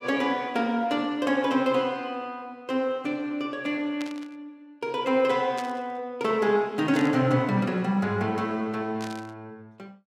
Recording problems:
burst of static; 4 times, first at 4 s; peak -8 dB vs average level

